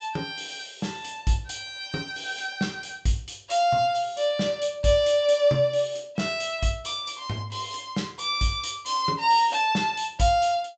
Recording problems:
treble missing; nothing above 8 kHz

